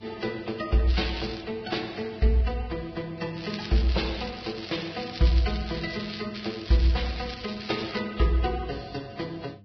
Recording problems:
codec artefacts; Vorbis, then Vorbis, log-spectral distance 9 dB, nothing above 5 kHz
hum; 50 Hz, harmonics up to 500 Hz, SNR 23 dB
crackle; at 1 s, from 3.5 to 6 s and from 6.5 to 8 s; loose cable, SNR 11 dB

